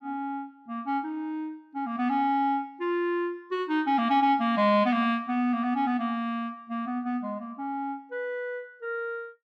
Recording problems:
none

